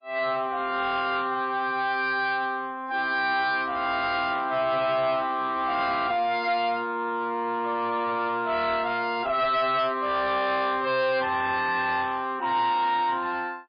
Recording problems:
codec artefacts; MP3, log-spectral distance 2 dB, nothing above 4.2 kHz
distortion; soft clipping, signal-to-distortion ratio 11 dB

